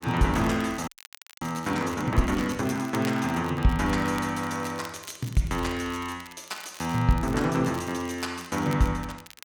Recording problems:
crackle; vinyl, SNR 19 dB
frozen audio; at 1 s for 0.5 s

